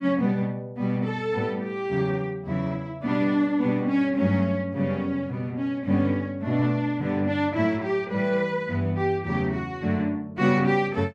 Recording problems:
none

